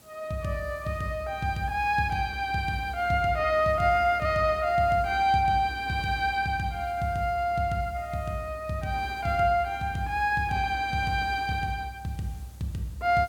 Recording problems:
background hiss; SNR 27 dB

